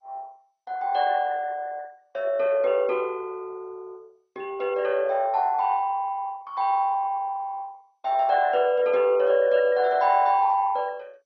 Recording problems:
lossy codec; MP2, log-spectral distance 3 dB

